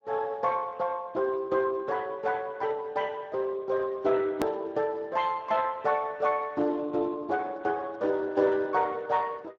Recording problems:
codec artefacts; Speex, log-spectral distance 3 dB, nothing above 16.1 kHz
hard cut with a click; at 4.5 s

